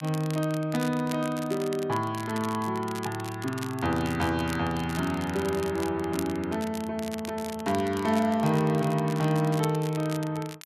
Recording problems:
crackle; vinyl, SNR 15 dB

